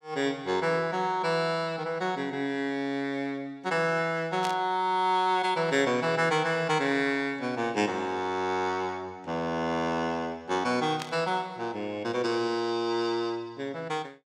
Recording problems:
burst of static; at 4.5 s and at 11 s; peak -3 dB vs average level

